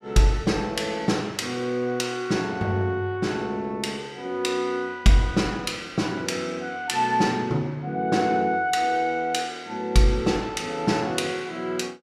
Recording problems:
none

